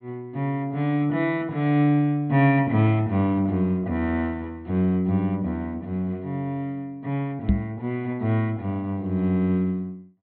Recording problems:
low-pass filter; nothing above 4.2 kHz
knock on the microphone; at 7.5 s; peak +7 dB vs average level

